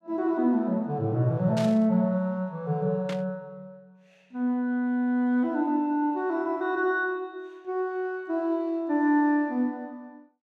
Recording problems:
burst of static; at 1.5 s and at 3 s; peak -7 dB vs average level

